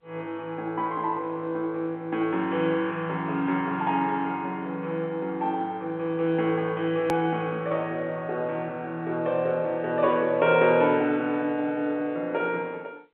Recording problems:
telephone audio; 220 Hz to 3.6 kHz, G.711
edit click; at 7 s

